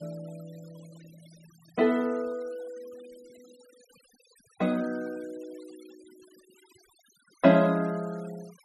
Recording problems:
noise reduction artefacts; signal-to-artefact ratio 27 dB

